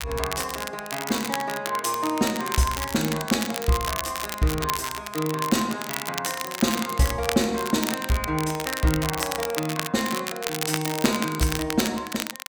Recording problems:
crackling; vinyl, SNR 5 dB

